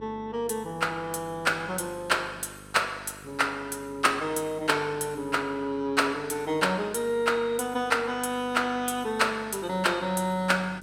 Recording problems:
electrical hum; 50 Hz, harmonics up to 1.1 kHz, SNR 22 dB

